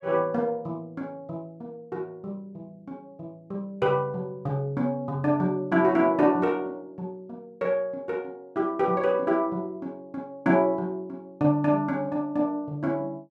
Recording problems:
none

